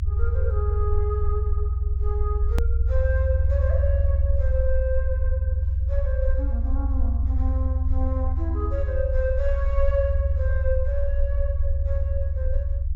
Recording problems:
treble missing; nothing above 8 kHz
rumble; below 80 Hz, SNR -8 dB
click at an edit; at 2.5 s

